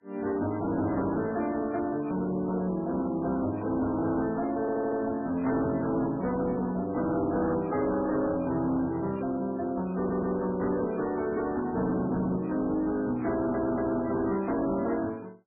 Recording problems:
lossy codec; MP3, log-spectral distance 3 dB, nothing above 2.4 kHz
distorted audio; hard clipping, uneven, signal-to-distortion ratio 10 dB
audio stuttering; at 4.5 s, at 10 s and at 13 s

